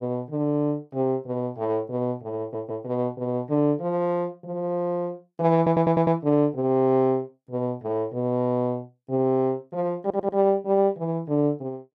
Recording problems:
stutter; at 2.5 s, at 5.5 s and at 10 s

